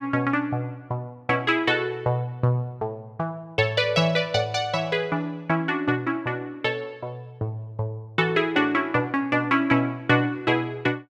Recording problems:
none

